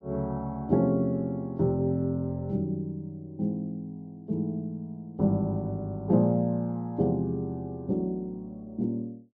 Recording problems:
none

